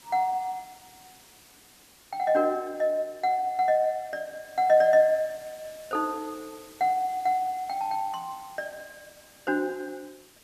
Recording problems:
hiss; SNR 24 dB

